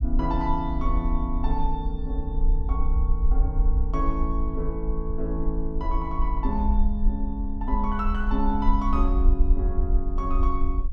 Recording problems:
rumble; below 52 Hz, SNR -3 dB

